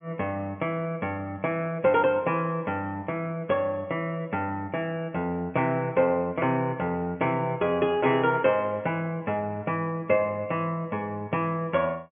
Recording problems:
treble missing; nothing above 3.2 kHz

